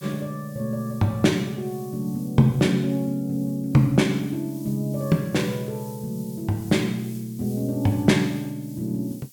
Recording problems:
hiss; SNR 22 dB

